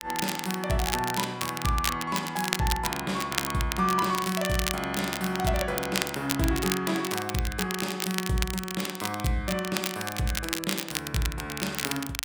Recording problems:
crackling; vinyl, SNR 3 dB

